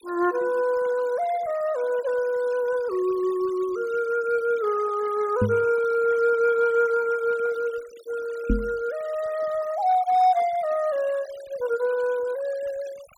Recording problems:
denoising artefacts; signal-to-artefact ratio 21 dB
microphone thump; at 5.5 s and at 8.5 s; peak +4 dB vs average level

